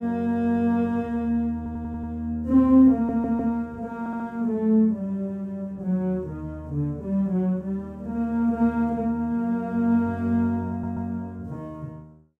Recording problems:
stutter; 4 times, first at 1.5 s

